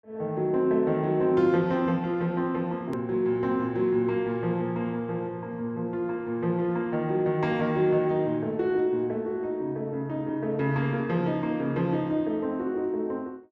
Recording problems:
click at an edit; at 3 s

